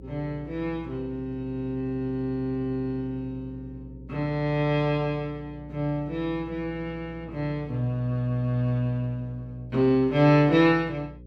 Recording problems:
hum; 60 Hz, harmonics up to 540 Hz, SNR 18 dB

